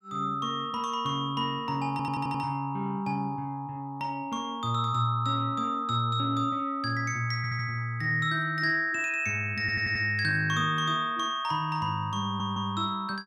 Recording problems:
stutter; 4 times, first at 2 s

